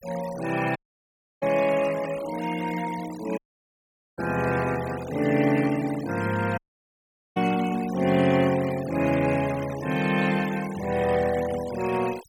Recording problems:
denoising artefacts; signal-to-artefact ratio 16 dB
audio cutting out; at 1 s for 0.5 s, at 3.5 s for 1 s and at 6.5 s for 1 s

